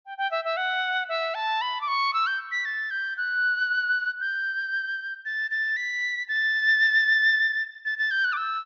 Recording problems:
low-pass filter; nothing above 6.8 kHz

